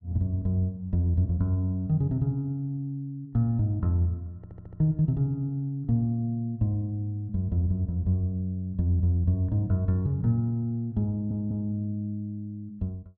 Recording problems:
stutter; at 4.5 s and at 11 s

